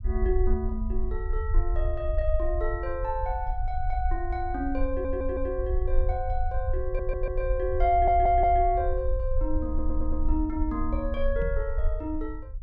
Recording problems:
rumble; below 58 Hz, strongest tone 20 Hz, SNR 2 dB
stutter; 4 times, first at 5 s
microphone thump; at 11 s; peak -4 dB vs average level

